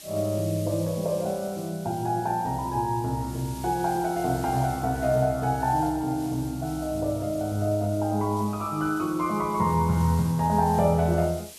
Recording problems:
background hiss; SNR 18 dB

